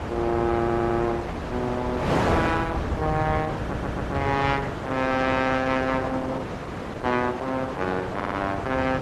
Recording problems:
lossy codec; Opus, log-spectral distance 3 dB
low-frequency rumble; below 130 Hz, SNR 9 dB
wind noise; below 1.2 kHz, SNR 4 dB
stutter; at 0.5 s, at 3.5 s and at 8 s

